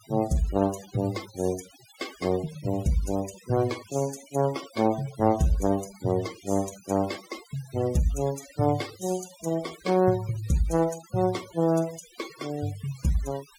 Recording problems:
noise reduction artefacts; signal-to-artefact ratio 17 dB

